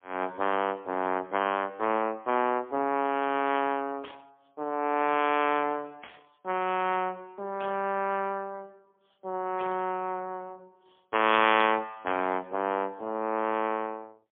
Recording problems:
phone line; 190 Hz to 3.3 kHz, AMR-NB, then MP3
burst of static; 5 times, first at 4 s; peak -11 dB vs average level

